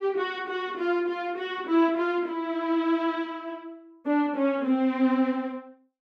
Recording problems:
none

